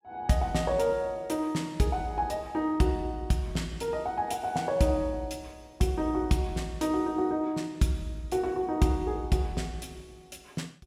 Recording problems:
none

